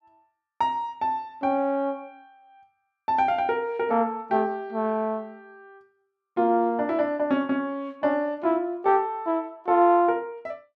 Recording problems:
none

